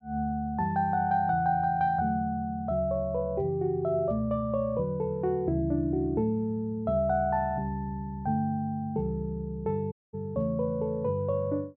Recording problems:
audio cutting out; at 10 s

